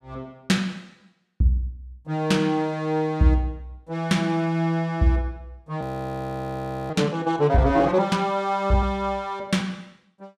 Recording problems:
frozen audio; at 6 s for 1 s

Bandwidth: 15 kHz